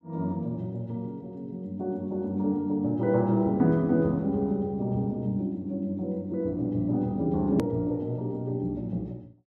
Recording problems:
edit click; at 7.5 s

